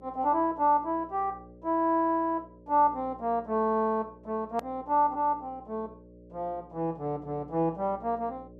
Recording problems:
hum; 60 Hz, harmonics up to 600 Hz, SNR 23 dB
edit click; at 4.5 s

